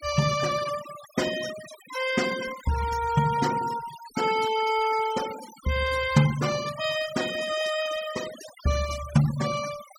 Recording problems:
denoising artefacts; signal-to-artefact ratio 12 dB

